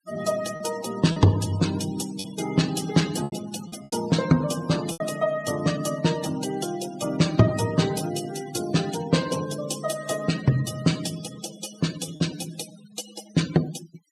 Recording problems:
noise reduction artefacts; signal-to-artefact ratio 13 dB
lost packets; 3% of the sound replaced, filled with repeated pitch periods

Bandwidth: 14.5 kHz